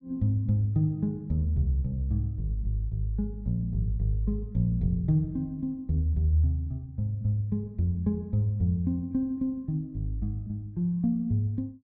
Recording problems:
none

